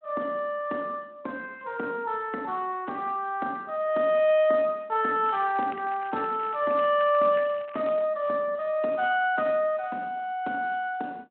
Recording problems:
telephone audio; 220 Hz to 3.1 kHz, Speex
crackling; from 5.5 to 8 s; loose cable, SNR 21 dB

